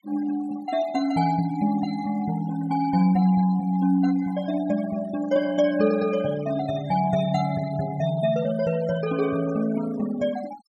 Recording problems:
noise reduction artefacts; signal-to-artefact ratio 18 dB

